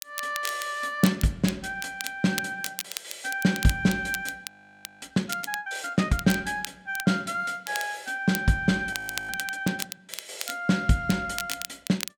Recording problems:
crackle; vinyl, SNR 10 dB
audio freezing; at 4.5 s for 0.5 s and at 9 s

